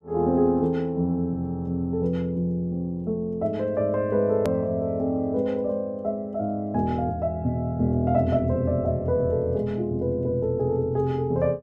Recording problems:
click at an edit; at 4.5 s

